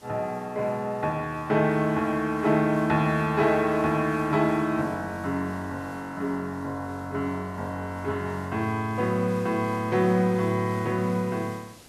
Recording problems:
background hiss; SNR 24 dB

